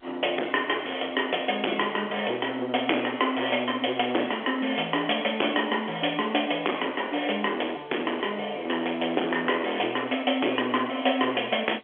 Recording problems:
phone line; 280 Hz to 3.4 kHz, G.711
distortion; hard clipping, uneven, signal-to-distortion ratio 14 dB

